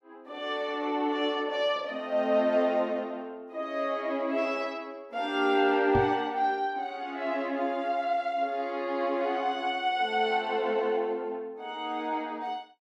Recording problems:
microphone bump; at 6 s; peak +2 dB vs average level

